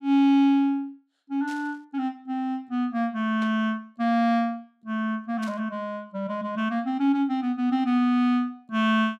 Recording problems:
static burst; at 1.5 s, at 3.5 s and at 5.5 s; peak -12 dB vs average level

